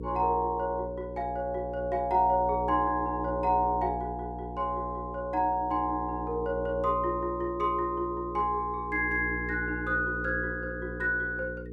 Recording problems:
hum; 60 Hz, harmonics up to 480 Hz, SNR 10 dB

